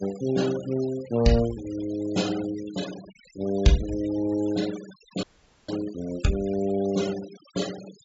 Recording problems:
treble missing; nothing above 8 kHz
denoising artefacts; signal-to-artefact ratio 16 dB
audio freezing; at 5 s

